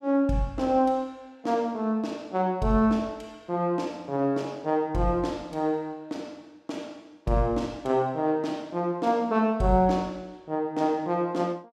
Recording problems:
none

